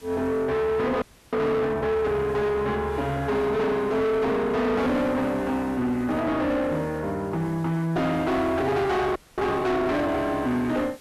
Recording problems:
distortion; soft clipping, signal-to-distortion ratio 7 dB
background hiss; slope -2 dB per octave, SNR 27 dB
audio freezing; at 1 s and at 9 s

